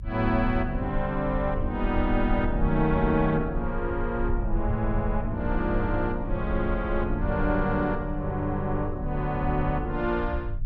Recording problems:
low-frequency rumble; below 66 Hz, strongest tone 26 Hz, SNR 6 dB

